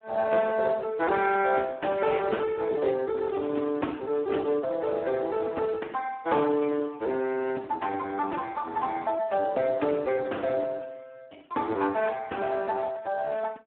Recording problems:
phone line; 240 Hz to 3.3 kHz, Speex

